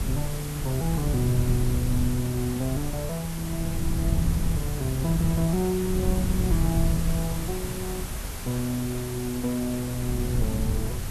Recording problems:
hiss; slope -3 dB per octave, SNR 8 dB
rumble; below 120 Hz, SNR 2 dB

